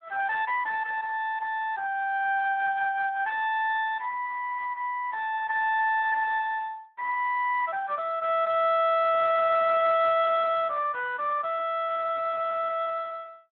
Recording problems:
treble missing; nothing above 3.6 kHz
codec artefacts; Speex, log-spectral distance 3 dB

